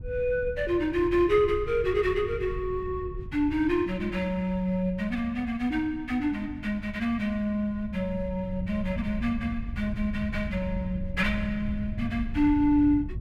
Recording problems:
wind noise; below 110 Hz, SNR 11 dB

